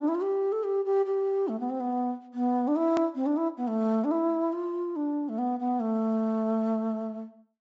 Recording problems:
treble cut off; nothing above 8 kHz
edit click; at 3 s

